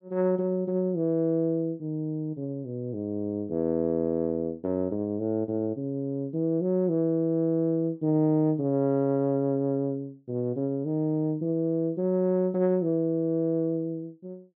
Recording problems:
none

